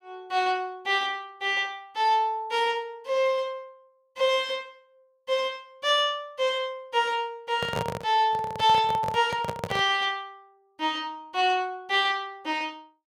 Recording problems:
microphone handling noise; from 7.5 to 10 s; peak 0 dB vs average level

